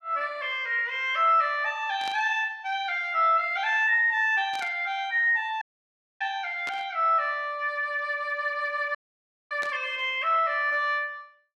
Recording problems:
static burst; 4 times, first at 2 s; peak -9 dB vs average level
audio cutting out; at 5.5 s for 0.5 s and at 9 s for 0.5 s

